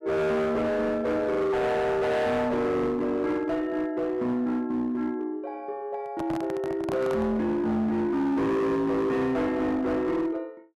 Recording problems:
distortion; hard clipping, uneven, signal-to-distortion ratio 8 dB
handling noise; from 6 to 7.5 s; peak -3 dB vs average level

